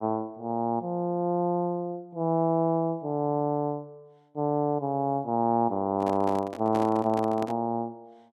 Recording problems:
handling noise; from 6 to 7.5 s; peak -5 dB vs average level

